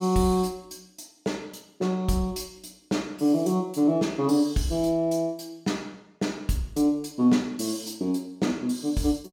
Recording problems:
none

